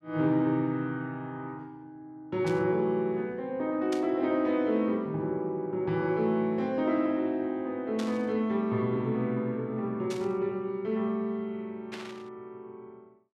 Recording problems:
static burst; 5 times, first at 2.5 s; peak -7 dB vs average level

